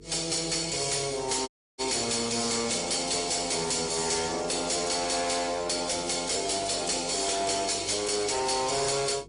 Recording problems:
codec artefacts; MP3, then AAC, log-spectral distance 11 dB, nothing above 10.4 kHz
distorted audio; hard clipping, signal-to-distortion ratio 7 dB
hum; 50 Hz, harmonics up to 450 Hz, SNR 24 dB
dropout; at 1.5 s

